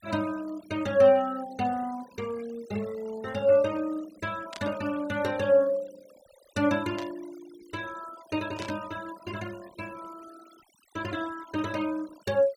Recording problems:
denoising artefacts; signal-to-artefact ratio 21 dB
static burst; at 4.5 s, at 7 s and at 8.5 s; peak -8 dB vs average level

